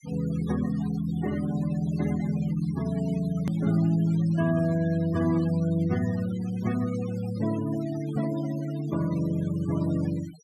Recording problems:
noise reduction artefacts; signal-to-artefact ratio 17 dB
edit click; at 3.5 s

